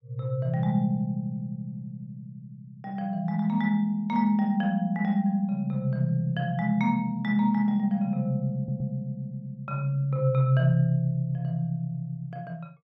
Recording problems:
stutter; at 8.5 s

